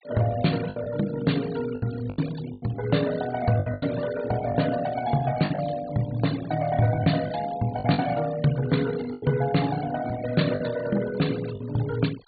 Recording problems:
low-pass filter; nothing above 4.6 kHz
denoising artefacts; signal-to-artefact ratio 16 dB
packet loss; 7% of the sound replaced, filled with the last packet

